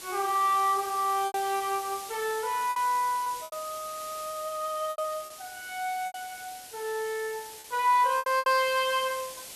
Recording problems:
background hiss; SNR 13 dB
packet loss; 7% of the sound replaced, filled with repeated pitch periods

